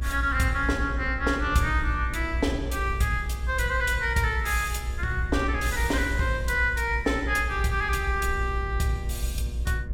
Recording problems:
electrical hum; 60 Hz, harmonics up to 1.7 kHz, SNR 20 dB
low-frequency rumble; below 64 Hz, strongest tone 60 Hz, SNR 4 dB

